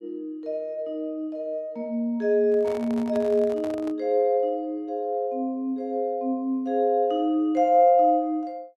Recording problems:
microphone handling noise; from 2.5 to 4 s; peak -9 dB vs average level

